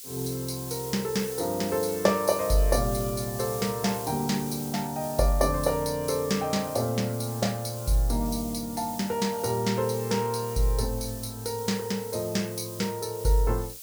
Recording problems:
hiss; SNR 11 dB

